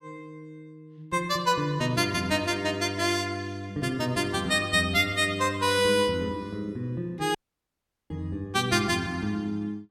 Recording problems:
dropout; at 7.5 s for 1 s

